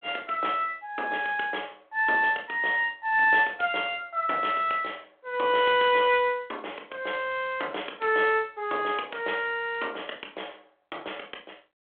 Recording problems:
phone line; 280 Hz to 3.4 kHz, G.726

